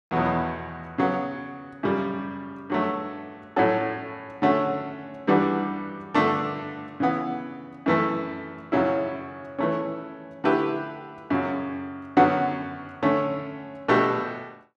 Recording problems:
none

